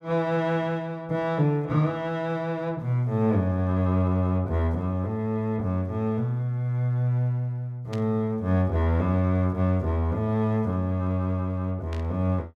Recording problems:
burst of static; at 8 s and at 12 s; peak -11 dB vs average level

